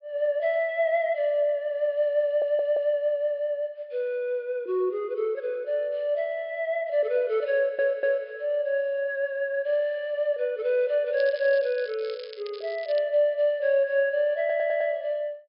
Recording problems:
treble cut off; nothing above 5.5 kHz
audio stuttering; at 2.5 s, at 7.5 s and at 14 s
crackling; from 11 to 13 s; loose cable, SNR 20 dB

